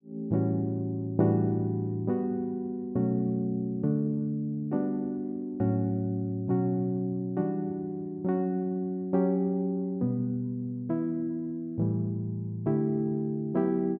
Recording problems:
none

